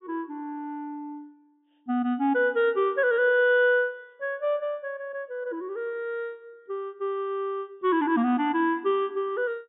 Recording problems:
low-pass filter; nothing above 3.7 kHz

